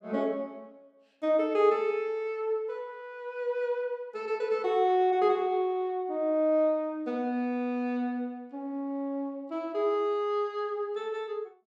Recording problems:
none

